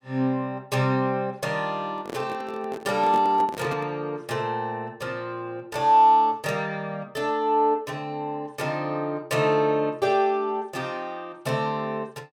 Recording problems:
microphone handling noise; from 2 to 4 s; peak -4 dB vs average level

